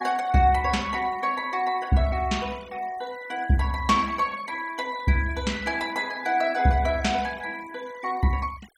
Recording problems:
denoising artefacts; signal-to-artefact ratio 20 dB

